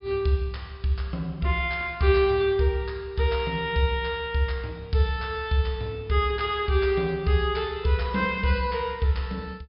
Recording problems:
low-pass filter; nothing above 5.5 kHz

